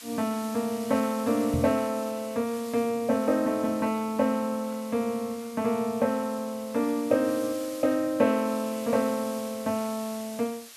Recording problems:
hiss; slope +2 dB per octave, SNR 16 dB
knock on the microphone; at 1.5 s; peak +1 dB vs average level

